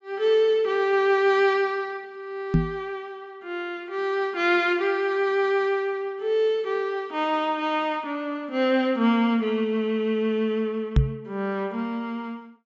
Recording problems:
low-pass filter; nothing above 8 kHz
knock on the microphone; at 2.5 s and at 11 s; peak +8 dB vs average level

